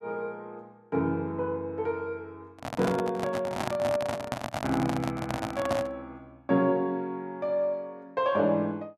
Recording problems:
handling noise; from 2.5 to 6 s; peak +3 dB vs average level

